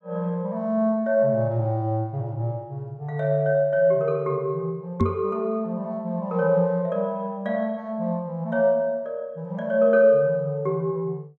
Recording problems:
knock on the microphone; at 5 s; peak +5 dB vs average level

